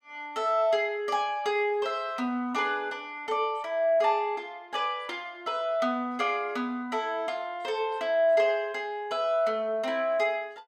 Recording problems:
none

